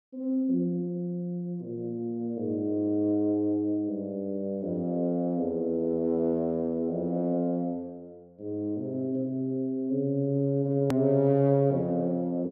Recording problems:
edit click; at 11 s

